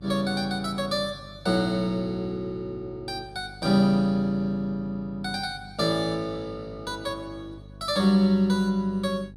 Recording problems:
electrical hum; 50 Hz, harmonics up to 550 Hz, SNR 20 dB

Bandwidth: 13 kHz